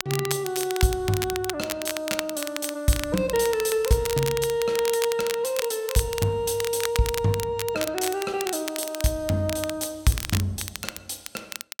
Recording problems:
crackle; vinyl, SNR 7 dB

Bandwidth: 17 kHz